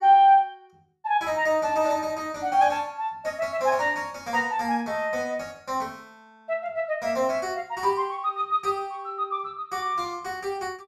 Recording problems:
none

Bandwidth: 14.5 kHz